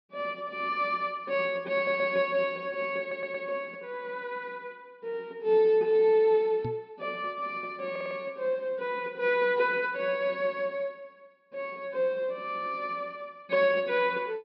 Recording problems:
treble cut off; nothing above 5.5 kHz
stutter; at 2 s, at 3 s and at 8 s
microphone bump; at 6.5 s; peak -3 dB vs average level

